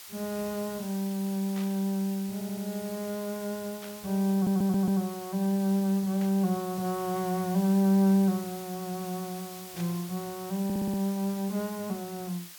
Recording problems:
background hiss; slope +3 dB per octave, SNR 14 dB
static burst; 4 times, first at 1.5 s; peak -12 dB vs average level
stutter; at 2.5 s, at 4.5 s and at 11 s

